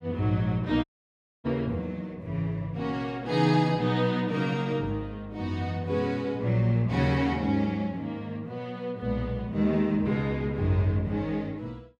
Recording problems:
audio cutting out; at 1 s for 0.5 s

